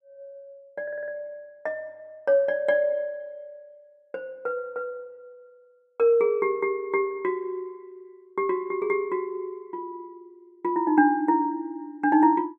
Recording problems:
audio stuttering; at 1 s

